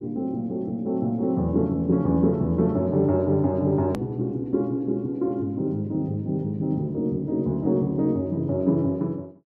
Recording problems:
click at an edit; at 4 s

